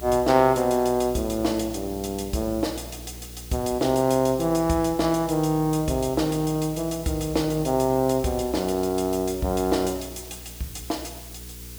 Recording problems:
hum; 60 Hz, harmonics up to 480 Hz, SNR 18 dB
background hiss; slope +2 dB per octave, SNR 17 dB

